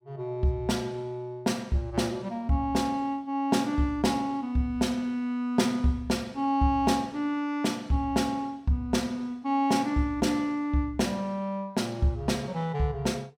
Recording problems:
none

